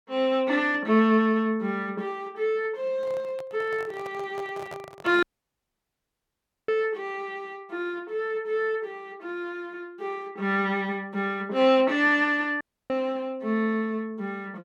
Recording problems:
microphone handling noise; from 3 to 5 s; peak -9 dB vs average level
dropout; at 5 s for 1.5 s and at 13 s

